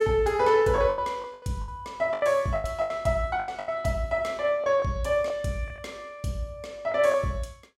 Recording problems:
packet loss; 11% of the sound replaced, filled with the last packet

